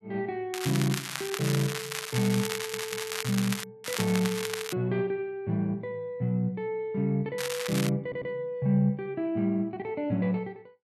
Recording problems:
crackle; from 0.5 to 3.5 s, at 4 s and at 7.5 s; loose cable, SNR 5 dB
stutter; at 2.5 s and at 8 s

